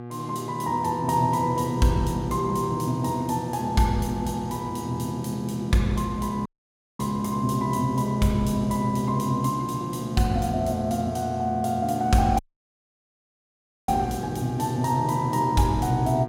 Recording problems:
hum; 60 Hz, harmonics up to 1.6 kHz, SNR 10 dB
audio cutting out; at 6.5 s for 0.5 s and at 12 s for 1.5 s

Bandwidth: 17 kHz